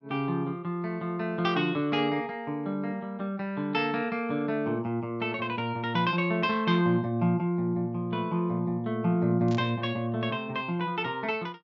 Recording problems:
treble missing; nothing above 7.5 kHz
static burst; at 9.5 s; peak -11 dB vs average level

